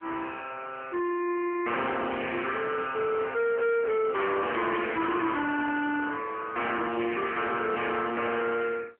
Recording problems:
phone line; 260 Hz to 3.2 kHz, AMR-NB
distorted audio; soft clipping, signal-to-distortion ratio 8 dB

